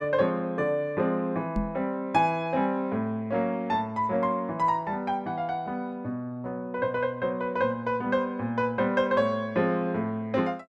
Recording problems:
microphone bump; at 1.5 s; peak +2 dB vs average level

